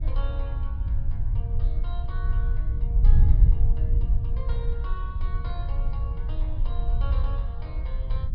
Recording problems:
treble cut off; nothing above 5.5 kHz
wind noise; below 64 Hz, SNR -17 dB

